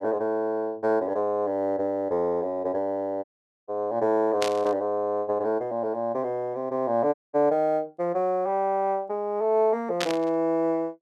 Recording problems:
audio cutting out; at 3 s and at 7 s
static burst; at 4.5 s and at 10 s; peak +2 dB vs average level

